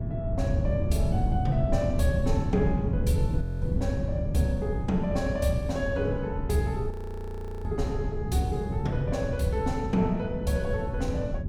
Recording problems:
wind noise; below 150 Hz, SNR 0 dB
frozen audio; at 3.5 s and at 7 s for 1 s

